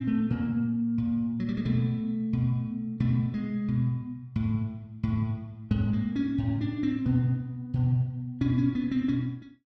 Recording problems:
none

